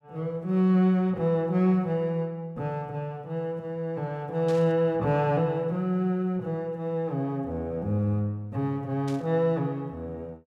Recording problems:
burst of static; at 4.5 s and at 9 s; peak -12 dB vs average level

